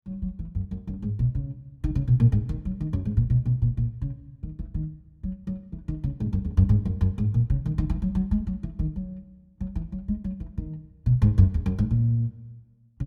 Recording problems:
none

